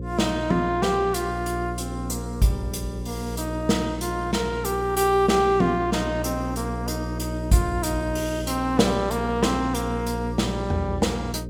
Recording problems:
hum; 60 Hz, harmonics up to 540 Hz, SNR 7 dB

